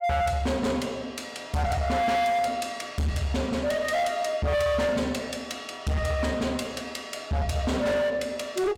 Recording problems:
distortion; hard clipping, signal-to-distortion ratio 7 dB

